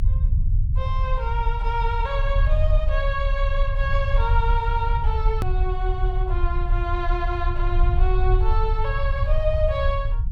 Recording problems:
low-frequency rumble; below 64 Hz, SNR -3 dB
click at an edit; at 5.5 s

